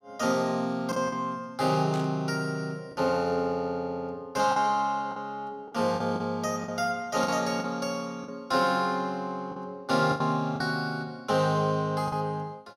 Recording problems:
lost packets; 5% of the sound replaced, filled with the last packet
burst of static; at 2 s; peak -10 dB vs average level

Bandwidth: 16 kHz